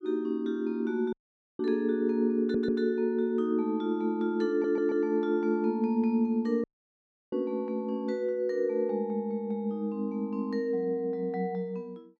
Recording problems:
dropout; at 1 s and at 6.5 s for 0.5 s
stutter; at 2.5 s and at 4.5 s

